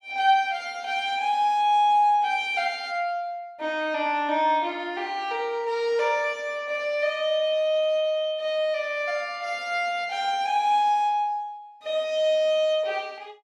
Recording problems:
none

